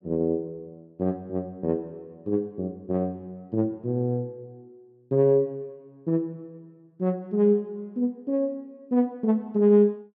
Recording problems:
none

